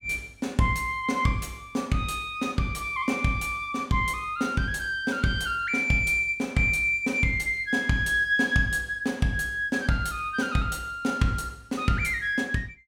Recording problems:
none

